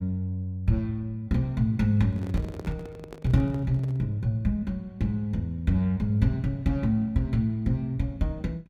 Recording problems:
microphone handling noise; from 2 to 4 s; peak -7 dB vs average level

